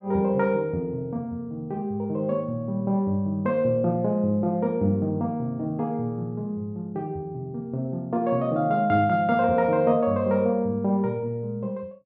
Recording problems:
none

